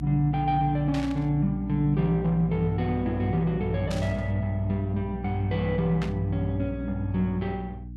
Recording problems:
hum; 60 Hz, harmonics up to 300 Hz, SNR 10 dB
burst of static; at 1 s, at 4 s and at 6 s; peak -7 dB vs average level

